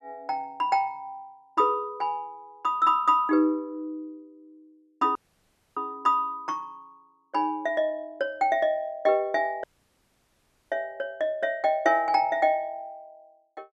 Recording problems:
dropout; at 5 s for 0.5 s and at 9.5 s for 1 s

